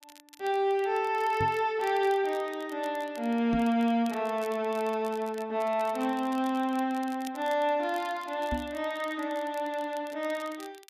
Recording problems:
crackle; vinyl, SNR 23 dB
microphone bump; at 1.5 s, at 3.5 s and at 8.5 s; peak 0 dB vs average level

